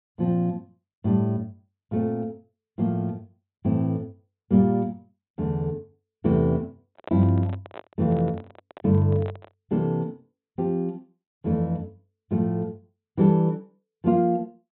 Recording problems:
low-pass filter; nothing above 3.9 kHz
microphone handling noise; from 7 to 9.5 s; peak -8 dB vs average level

